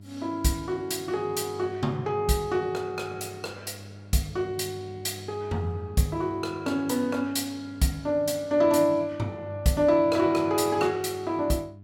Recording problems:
electrical hum; 50 Hz, harmonics up to 600 Hz, SNR 18 dB

